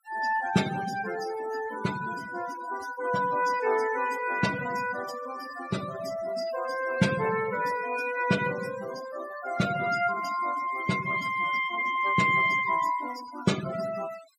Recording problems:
noise reduction artefacts; signal-to-artefact ratio 12 dB

